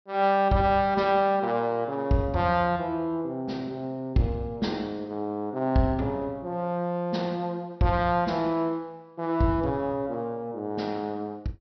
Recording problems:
low-pass filter; nothing above 5.9 kHz

